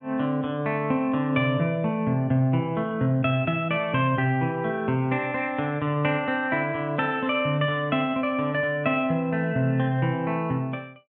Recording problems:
low-pass filter; nothing above 5.5 kHz

